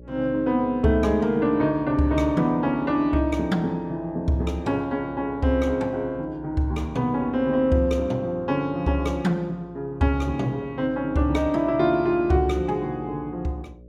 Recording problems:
electrical hum; 60 Hz, harmonics up to 600 Hz, SNR 22 dB

